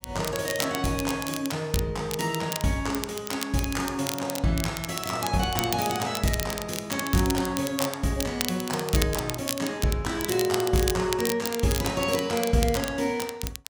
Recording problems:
crackling; vinyl, SNR 7 dB

